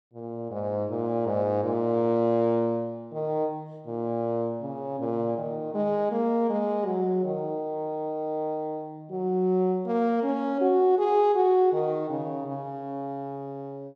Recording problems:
none

